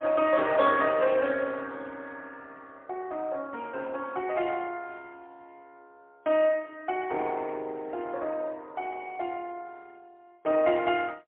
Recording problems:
phone line; 280 Hz to 3.5 kHz, AMR-NB, then MP3

